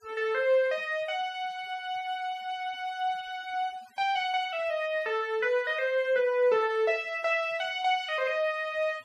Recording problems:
denoising artefacts; signal-to-artefact ratio 26 dB

